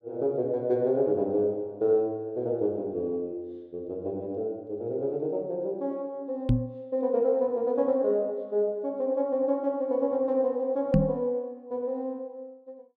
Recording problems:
knock on the microphone; at 6.5 s and at 11 s; peak +9 dB vs average level

